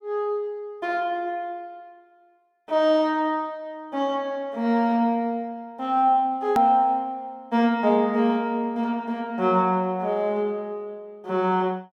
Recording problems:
edit click; at 6.5 s

